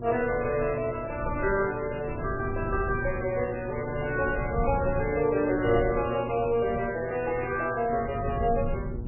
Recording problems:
codec artefacts; MP3, log-spectral distance 4 dB, nothing above 2.5 kHz
hum; 60 Hz, harmonics up to 960 Hz, SNR 13 dB
rumble; below 130 Hz, SNR 10 dB

